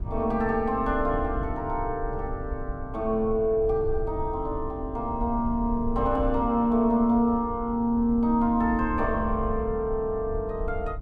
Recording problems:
low-frequency rumble; below 78 Hz, SNR 10 dB

